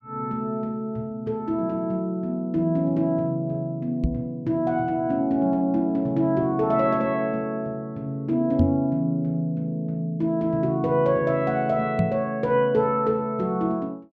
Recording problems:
microphone thump; at 4 s, at 8.5 s and at 12 s; peak +6 dB vs average level

